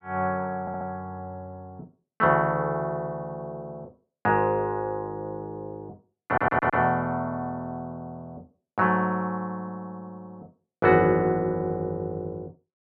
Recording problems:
audio stuttering; at 0.5 s and at 6.5 s

